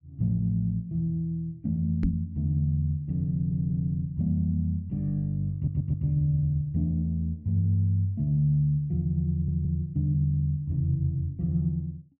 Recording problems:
knock on the microphone; at 2 s; peak +4 dB vs average level
stutter; at 3.5 s, at 5.5 s and at 9.5 s

